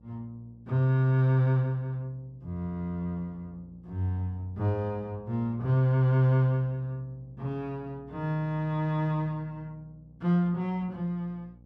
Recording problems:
hum; 60 Hz, harmonics up to 600 Hz, SNR 25 dB

